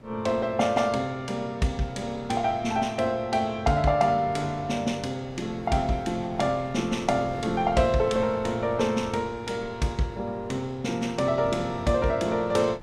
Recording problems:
wind noise; below 500 Hz, SNR 20 dB

